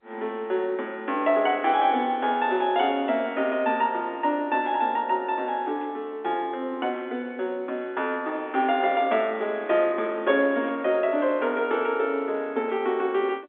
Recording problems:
telephone audio; 220 Hz to 3.7 kHz, G.711
microphone handling noise; from 9.5 to 11 s; peak -8 dB vs average level

